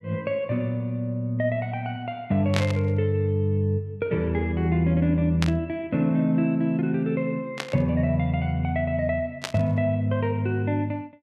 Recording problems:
burst of static; 4 times, first at 2.5 s; peak +1 dB vs average level

